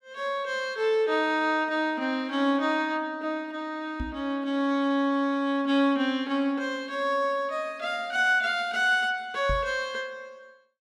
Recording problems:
knock on the microphone; at 4 s and at 9.5 s; peak -2 dB vs average level

